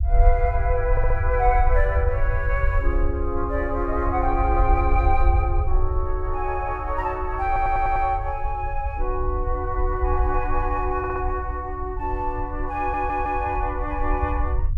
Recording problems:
low-frequency rumble; below 64 Hz, SNR 2 dB
stutter; 4 times, first at 1 s

